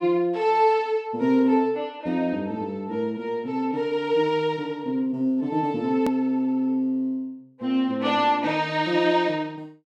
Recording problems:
hard cut with a click; at 6 s

